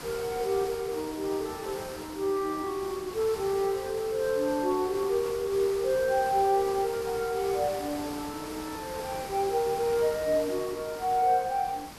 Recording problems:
background hiss; slope -3 dB per octave, SNR 12 dB

